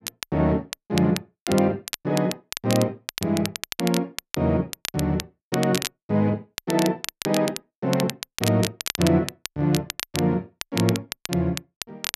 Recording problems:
crackle; vinyl, SNR 7 dB

